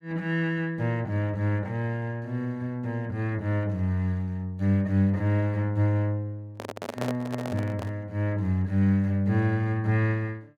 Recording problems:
handling noise; from 6.5 to 8 s; peak -1 dB vs average level

